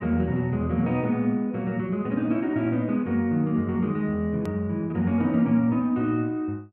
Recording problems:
hard cut with a click; at 4.5 s

